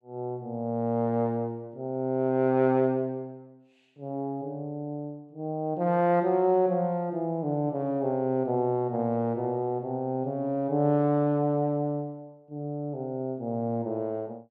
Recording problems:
none

